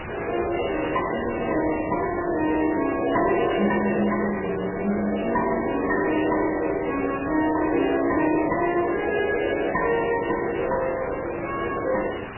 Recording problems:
codec artefacts; MP3, log-spectral distance 11 dB, nothing above 2.6 kHz
distortion; soft clipping, signal-to-distortion ratio 6 dB
background hiss; SNR 9 dB

